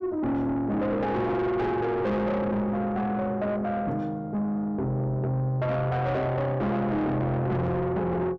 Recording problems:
distorted audio; soft clipping, signal-to-distortion ratio 7 dB

